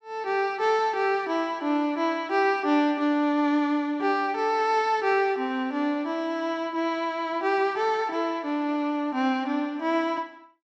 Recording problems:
none

